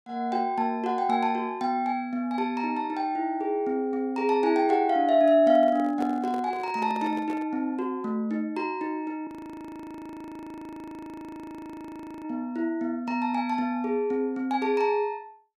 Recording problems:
handling noise; from 5.5 to 7.5 s; peak -7 dB vs average level
audio freezing; at 9.5 s for 3 s

